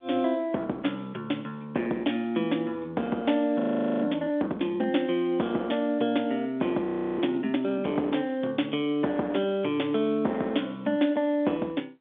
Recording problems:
telephone audio; 190 Hz to 3.6 kHz, G.711
distortion; hard clipping, signal-to-distortion ratio 14 dB
frozen audio; at 3.5 s and at 7 s

